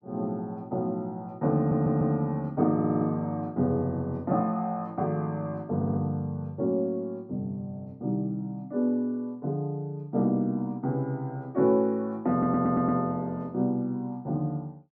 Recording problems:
audio stuttering; 4 times, first at 1.5 s

